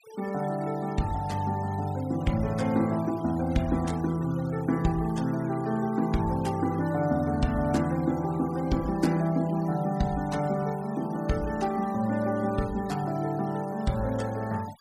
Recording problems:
noise reduction artefacts; signal-to-artefact ratio 21 dB

